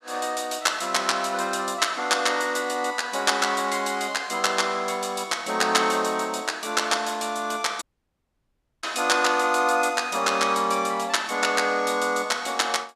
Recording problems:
audio cutting out; at 8 s for 1 s

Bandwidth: 14.5 kHz